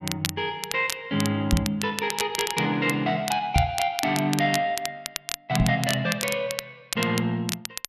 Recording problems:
crackle; vinyl, SNR 7 dB
microphone bump; at 1.5 s, at 3.5 s and at 5.5 s; peak +8 dB vs average level

